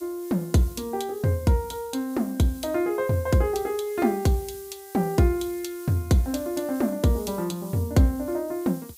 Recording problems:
background hiss; slope +5 dB per octave, SNR 19 dB

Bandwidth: 15.5 kHz